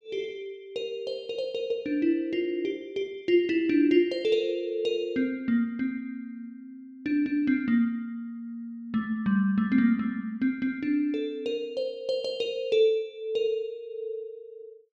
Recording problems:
none

